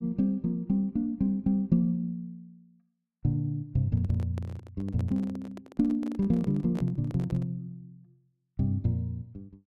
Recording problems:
microphone handling noise; from 4 to 7.5 s; peak -7 dB vs average level

